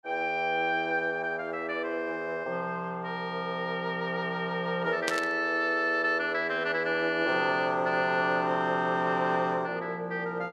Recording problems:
burst of static; at 5 s; peak +2 dB vs average level

